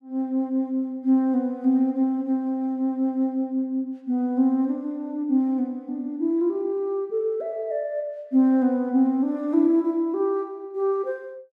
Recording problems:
none

